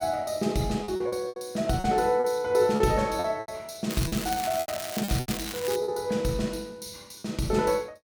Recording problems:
lost packets; 9% of the sound replaced, filled with repeated pitch periods
crackle; from 4 to 6 s; loose cable, SNR 8 dB

